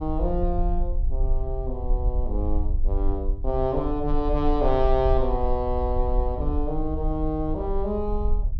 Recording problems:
low-frequency rumble; below 52 Hz, SNR 2 dB

